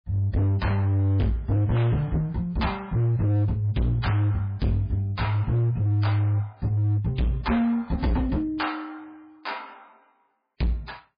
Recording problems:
lossy compression; MP3, log-spectral distance 2 dB, nothing above 11 kHz
distorted audio; hard clipping, signal-to-distortion ratio 6 dB

